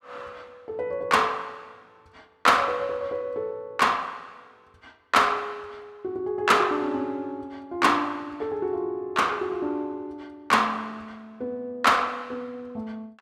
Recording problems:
none

